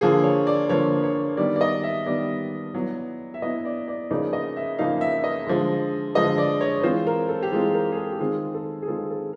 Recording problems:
none

